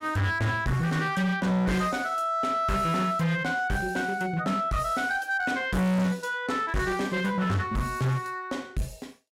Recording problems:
distorted audio; hard clipping, signal-to-distortion ratio 8 dB

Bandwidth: 16 kHz